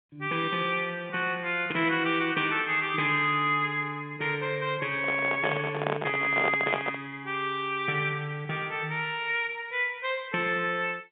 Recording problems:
telephone audio; 190 Hz to 3.6 kHz, G.711
microphone handling noise; from 5 to 7 s; peak +3 dB vs average level

